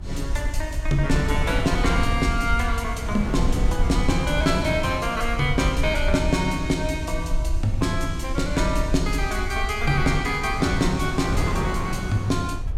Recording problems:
hum; 60 Hz, harmonics up to 360 Hz, SNR 22 dB
rumble; below 64 Hz, SNR 5 dB
wind noise; below 260 Hz, SNR 6 dB

